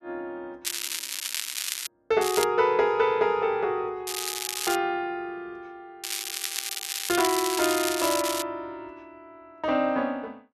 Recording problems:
crackle; 4 times, first at 0.5 s; loose cable, SNR 4 dB

